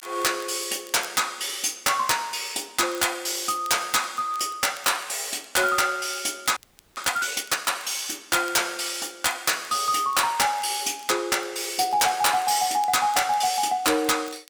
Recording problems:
distortion; hard clipping, signal-to-distortion ratio 6 dB
crackling; vinyl, SNR 25 dB
frozen audio; at 6.5 s

